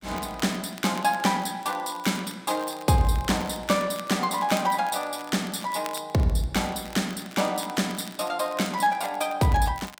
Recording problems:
crackle; vinyl, SNR 19 dB

